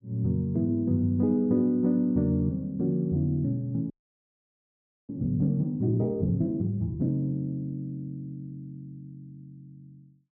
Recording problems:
audio freezing; at 4 s for 1 s

